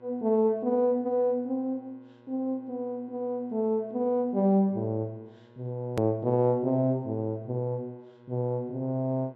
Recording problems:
low-pass filter; nothing above 7.7 kHz
hum; 60 Hz, harmonics up to 2.5 kHz, SNR 28 dB
hard cut with a click; at 6 s

